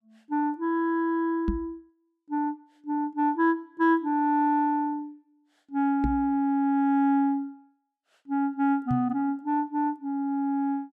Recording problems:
microphone thump; at 1.5 s, at 6 s and at 9 s; peak +1 dB vs average level

